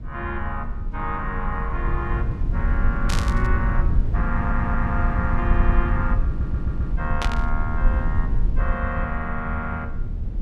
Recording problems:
rumble; below 74 Hz, SNR -4 dB
burst of static; at 3 s and at 7 s; peak +4 dB vs average level
audio stuttering; at 4.5 s, at 5.5 s and at 6.5 s

